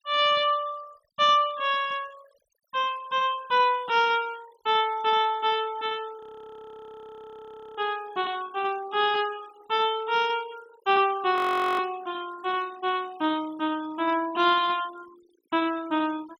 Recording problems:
noise reduction artefacts; signal-to-artefact ratio 23 dB
audio freezing; at 6 s for 1.5 s and at 11 s

